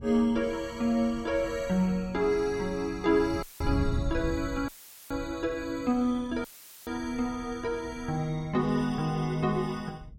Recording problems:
wind on the microphone; below 130 Hz, SNR 12 dB
dropout; at 3.5 s, at 4.5 s and at 6.5 s; filled with static

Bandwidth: 16.5 kHz